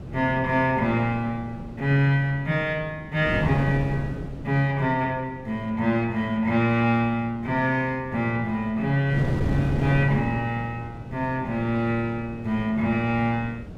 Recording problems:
wind noise; below 300 Hz, SNR 10 dB

